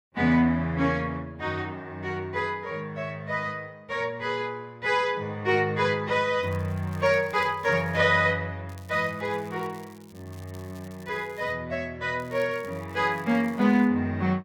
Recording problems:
crackling; from 6.5 to 8 s, from 8.5 to 12 s and from 12 to 14 s; loose cable, SNR 28 dB

